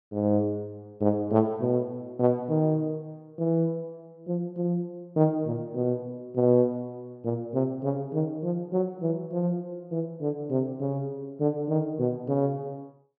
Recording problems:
none

